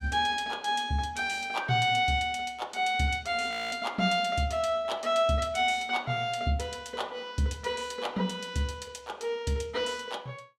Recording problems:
frozen audio; at 3.5 s

